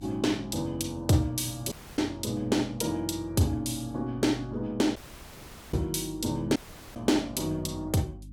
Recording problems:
hum; 50 Hz, harmonics up to 300 Hz, SNR 19 dB
dropout; at 1.5 s, at 5 s for 1 s and at 6.5 s

